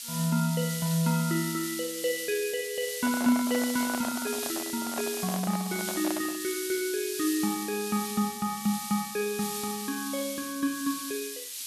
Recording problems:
background hiss; SNR 5 dB
handling noise; from 3 to 6.5 s; peak -1 dB vs average level

